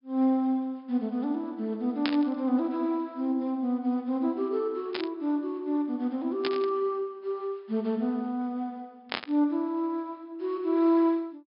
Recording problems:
treble missing; nothing above 5.5 kHz
static burst; 4 times, first at 2 s; peak +2 dB vs average level

